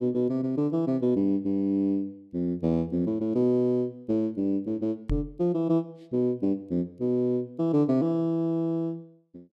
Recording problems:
microphone thump; at 5 s; peak 0 dB vs average level

